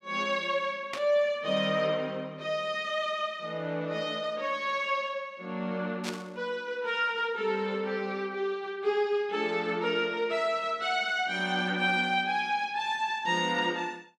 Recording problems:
static burst; at 1 s and at 6 s; peak -2 dB vs average level

